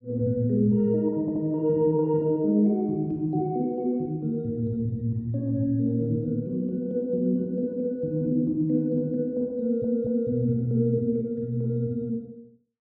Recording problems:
stutter; at 1 s and at 9.5 s

